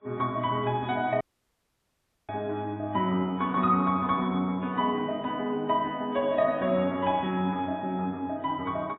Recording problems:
codec artefacts; AAC, log-spectral distance 2 dB, nothing above 3.4 kHz
audio cutting out; at 1 s for 1 s

